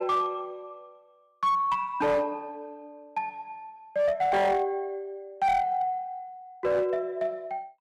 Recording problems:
distorted audio; hard clipping, uneven, signal-to-distortion ratio 12 dB

